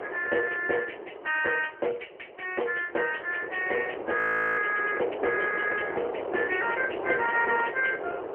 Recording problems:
telephone audio; 320 Hz to 3.1 kHz, AMR-NB
wind on the microphone; below 730 Hz, SNR 7 dB
frozen audio; at 4 s

